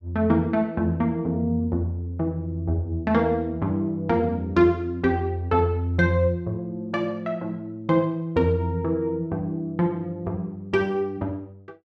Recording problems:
none

